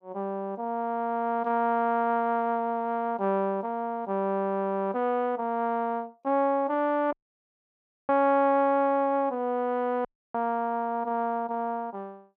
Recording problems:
dropout; at 7 s for 1 s and at 10 s

